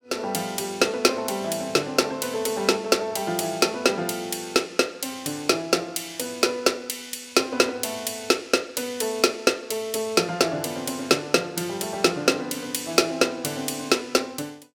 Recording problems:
none

